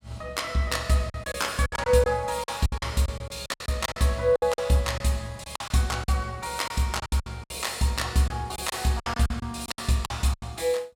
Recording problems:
lost packets; 13% of the sound replaced, filled with silence

